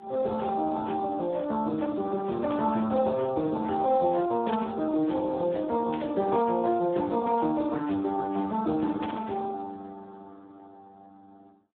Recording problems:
telephone audio; 240 Hz to 2.3 kHz, Speex
static burst; 4 times, first at 2.5 s; peak -10 dB vs average level

